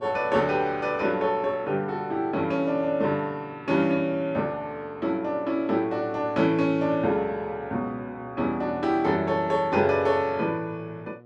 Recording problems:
electrical hum; 60 Hz, harmonics up to 1.3 kHz, SNR 24 dB

